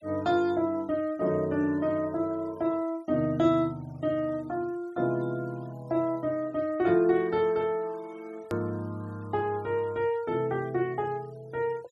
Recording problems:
denoising artefacts; signal-to-artefact ratio 27 dB
edit click; at 8.5 s

